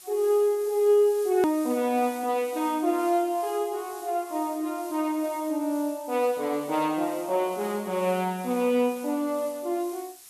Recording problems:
background hiss; slope +3 dB per octave, SNR 19 dB
edit click; at 1.5 s

